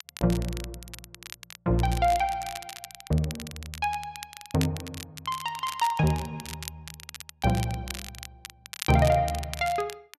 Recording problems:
crackle; vinyl, SNR 13 dB

